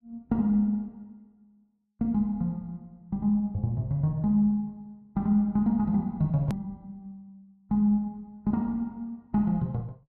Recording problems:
click at an edit; at 6.5 s

